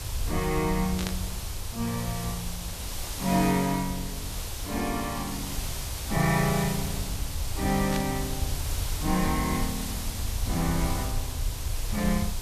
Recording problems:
hiss; SNR 6 dB
rumble; below 86 Hz, SNR 7 dB
static burst; at 1 s and at 8 s; peak -1 dB vs average level

